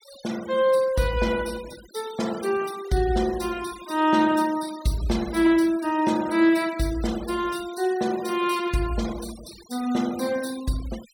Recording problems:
noise reduction artefacts; signal-to-artefact ratio 18 dB

